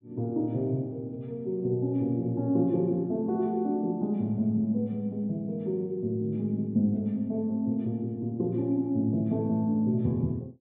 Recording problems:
treble missing; nothing above 4 kHz

